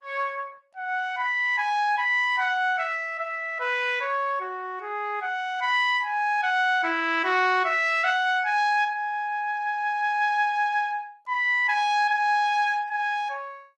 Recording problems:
lossy compression; Opus, then Opus, log-spectral distance 2 dB, nothing above 11.6 kHz

